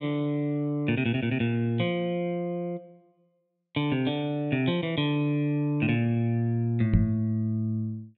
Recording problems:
treble cut off; nothing above 4.3 kHz
knock on the microphone; at 7 s; peak +8 dB vs average level

